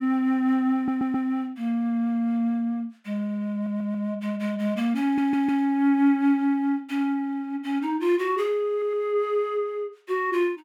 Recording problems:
stutter; 4 times, first at 1 s

